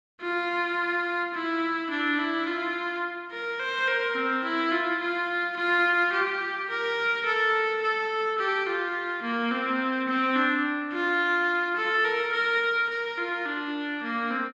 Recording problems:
none

